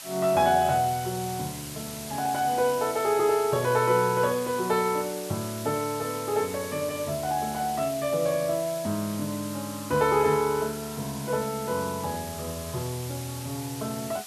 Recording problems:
background hiss; slope +2 dB per octave, SNR 11 dB

